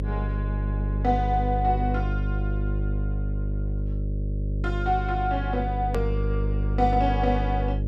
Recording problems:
electrical hum; 50 Hz, harmonics up to 550 Hz, SNR 0 dB
hard cut with a click; at 6 s

